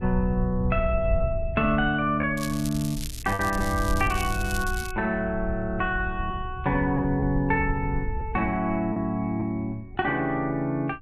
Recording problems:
wind noise; below 78 Hz, SNR 8 dB
packet loss; 3% of the sound replaced, filled with repeated pitch periods
crackle; from 2.5 to 5 s; loose cable, SNR 12 dB

